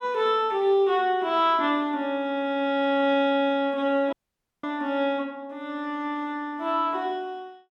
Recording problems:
dropout; at 4 s for 0.5 s

